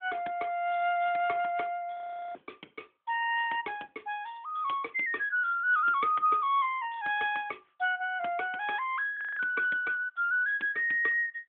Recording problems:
telephone audio; 260 Hz to 3.5 kHz, AMR-NB
audio freezing; at 2 s and at 9 s

